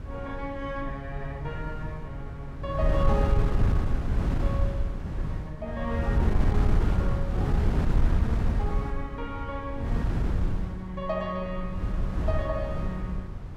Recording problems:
wind noise; below 120 Hz, SNR -6 dB

